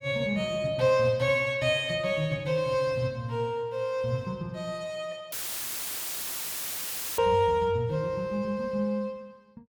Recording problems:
audio cutting out; at 5.5 s for 2 s; filled with static

